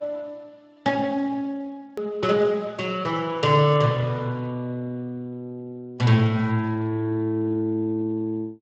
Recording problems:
codec artefacts; Speex, then Vorbis, log-spectral distance 2 dB
click at an edit; at 2 s

